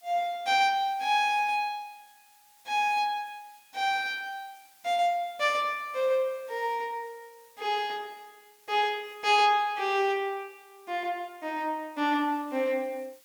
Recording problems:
background hiss; slope +3 dB per octave, SNR 29 dB

